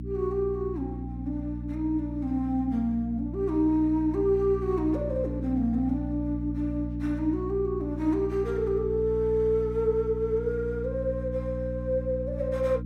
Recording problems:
hum; 60 Hz, harmonics up to 300 Hz, SNR 7 dB

